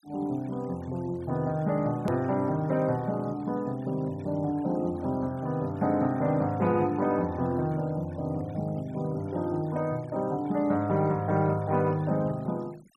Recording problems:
denoising artefacts; signal-to-artefact ratio 27 dB
click at an edit; at 2 s

